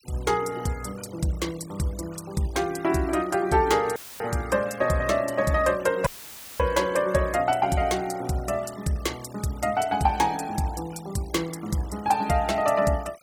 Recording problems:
noise reduction artefacts; signal-to-artefact ratio 21 dB
audio cutting out; at 4 s and at 6 s for 0.5 s; filled with static

